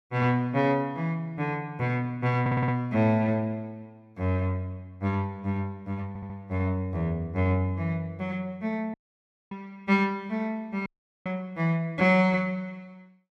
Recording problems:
stutter; at 2.5 s and at 6 s
audio cutting out; at 9 s for 0.5 s and at 11 s

